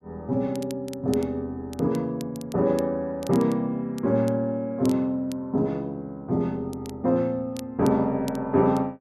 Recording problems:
crackling; vinyl, SNR 22 dB

